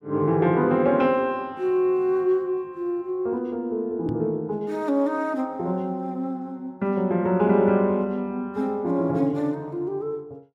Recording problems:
knock on the microphone; at 4 s; peak -3 dB vs average level

